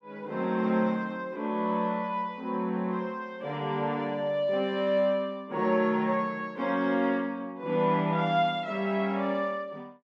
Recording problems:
none

